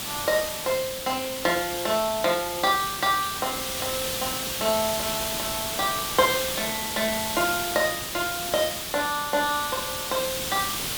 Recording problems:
background hiss; SNR 2 dB

